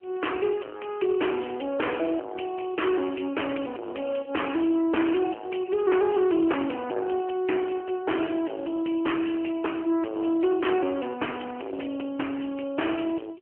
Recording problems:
telephone audio; 260 Hz to 3.1 kHz, AMR-NB
distorted audio; soft clipping, signal-to-distortion ratio 6 dB

